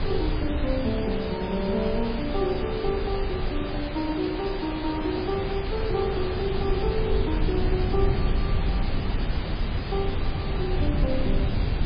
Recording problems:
codec artefacts; MP3, log-spectral distance 9 dB, nothing above 10.7 kHz
hiss; SNR 6 dB
low-frequency rumble; below 110 Hz, SNR 1 dB

